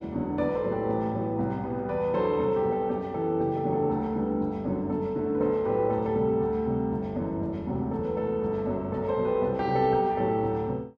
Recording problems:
none

